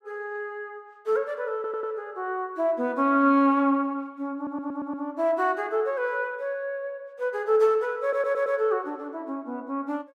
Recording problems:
audio stuttering; at 1.5 s, at 4.5 s and at 8 s

